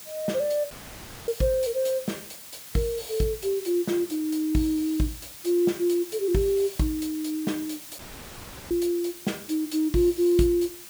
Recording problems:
hiss; slope +1 dB per octave, SNR 14 dB
dropout; at 0.5 s for 0.5 s and at 8 s for 0.5 s

